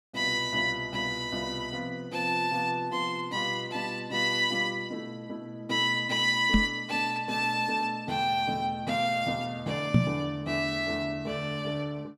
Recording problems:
microphone bump; at 6.5 s and at 10 s; peak +10 dB vs average level

